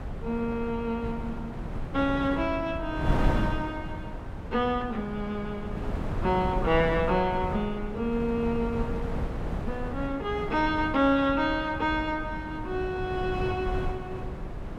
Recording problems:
wind noise; below 270 Hz, SNR 6 dB

